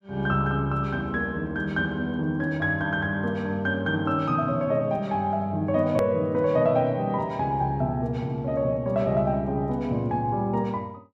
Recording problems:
hard cut with a click; at 6 s

